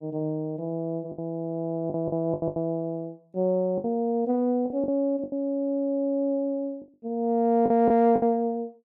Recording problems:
lost packets; 8% of the sound replaced, filled with the last packet

